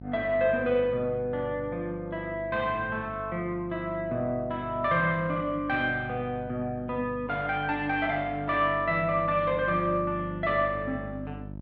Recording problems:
electrical hum; 50 Hz, harmonics up to 900 Hz, SNR 14 dB

